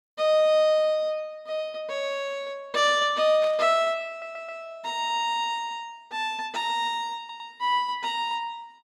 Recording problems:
burst of static; at 3.5 s; peak -12 dB vs average level
audio stuttering; at 4 s and at 7 s

